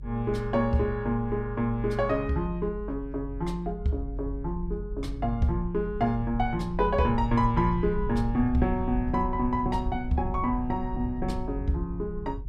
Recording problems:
rumble; below 70 Hz, strongest tone 46 Hz, SNR 8 dB

